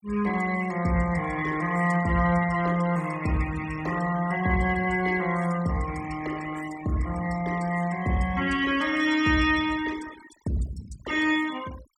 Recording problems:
noise reduction artefacts; signal-to-artefact ratio 17 dB

